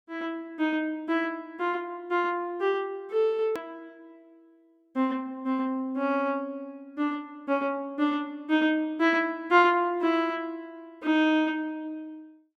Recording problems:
edit click; at 3.5 s

